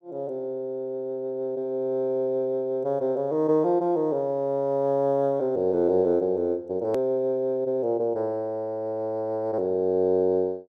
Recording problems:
click at an edit; at 7 s

